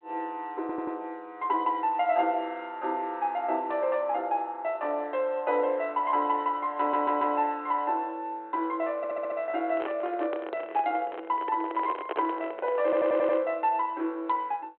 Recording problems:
phone line; 260 Hz to 3.4 kHz, G.726
audio stuttering; 4 times, first at 0.5 s
microphone handling noise; from 9.5 to 13 s; peak 0 dB vs average level

